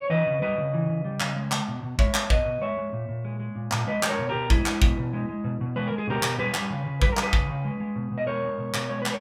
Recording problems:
none

